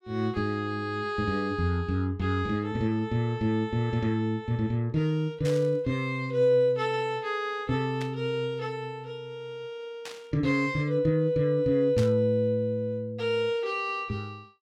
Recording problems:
static burst; 4 times, first at 5.5 s; peak -7 dB vs average level

